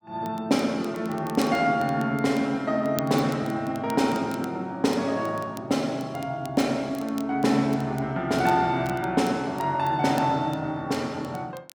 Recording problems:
crackle; vinyl, SNR 22 dB

